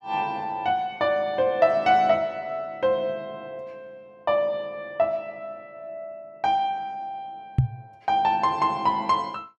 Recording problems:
microphone bump; at 7.5 s; peak +8 dB vs average level

